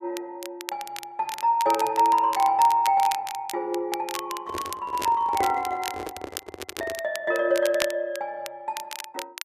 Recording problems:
crackle; vinyl, SNR 13 dB
microphone handling noise; from 4.5 to 7 s; peak -2 dB vs average level

